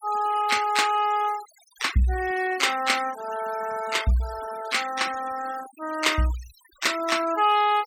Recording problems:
noise reduction artefacts; signal-to-artefact ratio 15 dB

